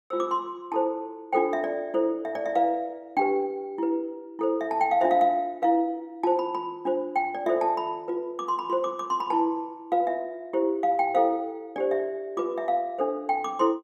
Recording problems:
none

